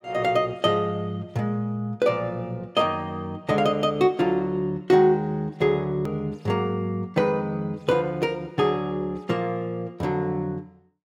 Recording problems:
hard cut with a click; at 6 s

